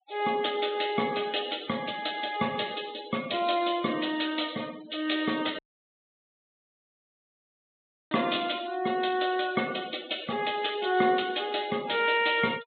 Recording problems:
low-pass filter; nothing above 4 kHz
denoising artefacts; signal-to-artefact ratio 16 dB
audio cutting out; at 5.5 s for 2.5 s

